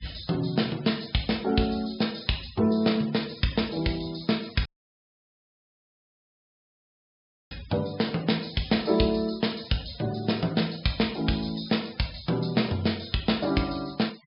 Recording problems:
treble missing; nothing above 5.5 kHz
denoising artefacts; signal-to-artefact ratio 20 dB
dropout; at 4.5 s for 3 s

